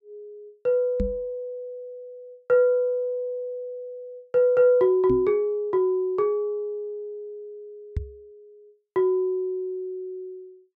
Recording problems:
microphone thump; at 1 s, at 5 s and at 8 s; peak 0 dB vs average level

